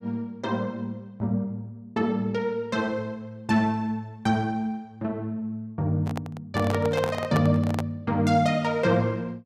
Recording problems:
handling noise; from 6 to 8 s; peak +1 dB vs average level

